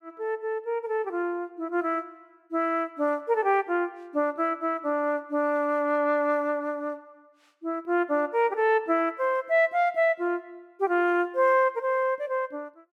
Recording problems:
none

